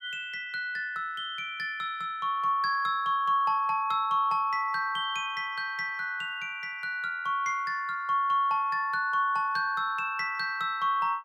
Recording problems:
none

